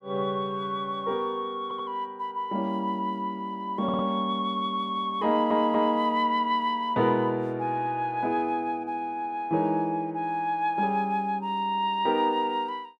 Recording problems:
stutter; at 1.5 s, at 4 s and at 5.5 s

